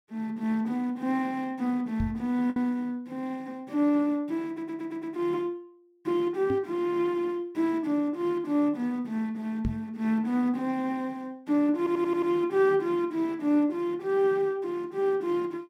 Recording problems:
lost packets; 0.4% of the sound replaced, filled with the last packet
microphone thump; at 2 s, at 6.5 s and at 9.5 s; peak +1 dB vs average level
stutter; at 4.5 s and at 12 s

